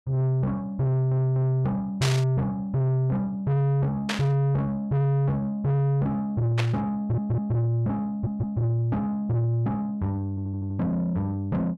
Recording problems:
distortion; soft clipping, signal-to-distortion ratio 7 dB
audio stuttering; 4 times, first at 1 s
static burst; at 2 s, at 4 s and at 6.5 s; peak +2 dB vs average level

